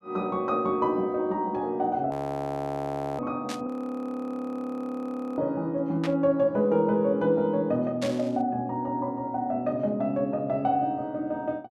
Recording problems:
audio freezing; at 2 s for 1 s and at 3.5 s for 1.5 s
static burst; at 3.5 s, at 6 s and at 8 s; peak -4 dB vs average level

